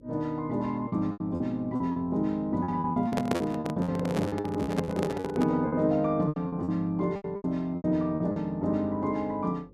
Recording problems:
hum; 50 Hz, harmonics up to 550 Hz, SNR 25 dB
lost packets; 13% of the sound replaced, filled with repeated pitch periods
microphone handling noise; from 3 to 5.5 s; peak +4 dB vs average level

